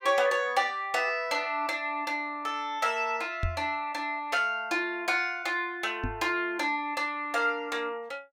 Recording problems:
microphone thump; at 3.5 s and at 6 s; peak +1 dB vs average level

